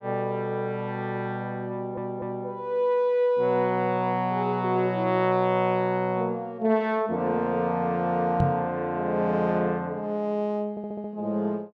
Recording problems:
audio stuttering; at 1.5 s and at 11 s
microphone thump; at 8.5 s; peak +4 dB vs average level

